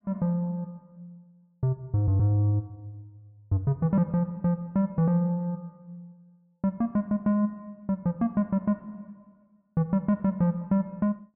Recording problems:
none

